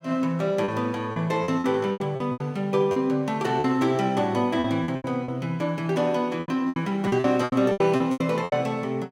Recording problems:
packet loss; 14% of the sound replaced, filled with repeated pitch periods

